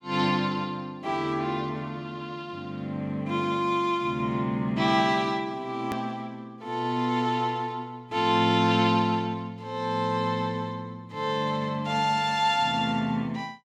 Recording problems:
hard cut with a click; at 6 s

